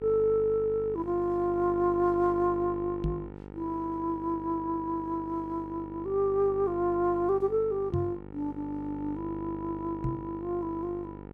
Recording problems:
electrical hum; 50 Hz, harmonics up to 1.9 kHz, SNR 13 dB
microphone thump; at 3 s, at 8 s and at 10 s; peak +2 dB vs average level

